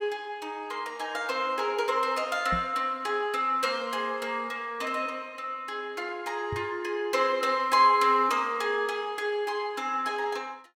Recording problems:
microphone thump; at 2.5 s and at 6.5 s; peak -2 dB vs average level

